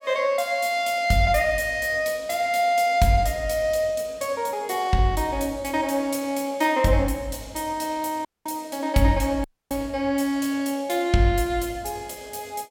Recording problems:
dropout; at 8.5 s and at 9.5 s

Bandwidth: 16.5 kHz